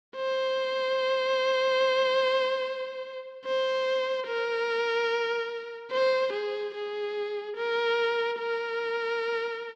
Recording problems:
none

